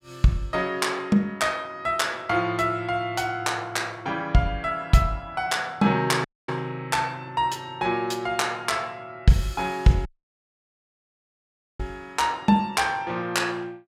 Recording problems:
dropout; at 6.5 s and at 10 s for 1.5 s

